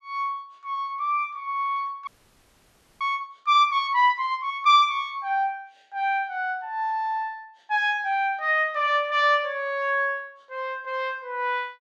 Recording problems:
audio freezing; at 2 s for 1 s

